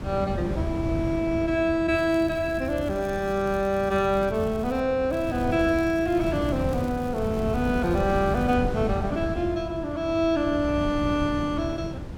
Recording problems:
wind noise; below 230 Hz, SNR 8 dB
crackling; from 2 to 4.5 s, at 4.5 s and from 5 to 8.5 s; loose cable, SNR 26 dB

